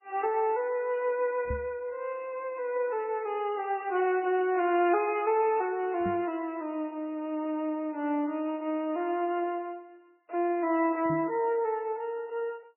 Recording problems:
lossy codec; MP3, log-spectral distance 2 dB, nothing above 2.8 kHz
microphone thump; at 1.5 s, at 6 s and at 11 s; peak -2 dB vs average level

